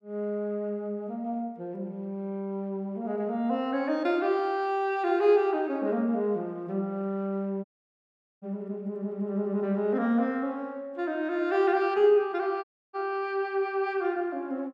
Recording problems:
dropout; at 7.5 s for 1 s and at 13 s

